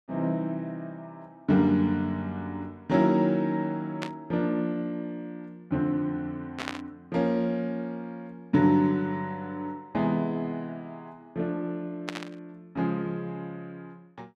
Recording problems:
burst of static; at 4 s, at 6.5 s and at 12 s; peak 0 dB vs average level

